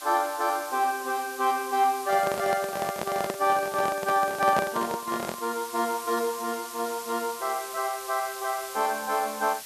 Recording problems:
background hiss; slope +3 dB per octave, SNR 12 dB
microphone handling noise; from 2 to 5.5 s; peak +2 dB vs average level

